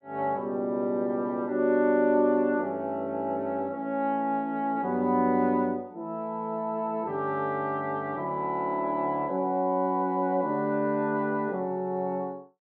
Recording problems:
none

